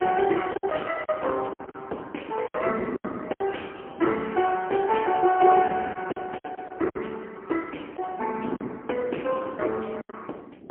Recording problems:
telephone audio; 280 Hz to 3.2 kHz, AMR-NB, then MP3
wind on the microphone; below 430 Hz, SNR 14 dB
packet loss; 8% of the sound replaced, filled with silence

